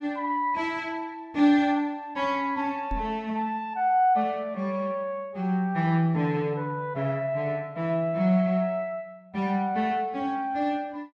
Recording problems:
microphone thump; at 3 s; peak -4 dB vs average level

